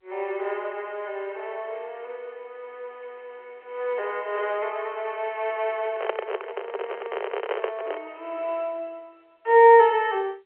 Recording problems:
phone line; 340 Hz to 3.2 kHz, G.711
handling noise; from 6 to 8 s; peak +1 dB vs average level

